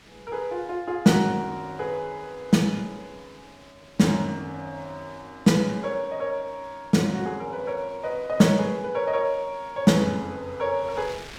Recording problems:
wind on the microphone; below 4 kHz, SNR 25 dB

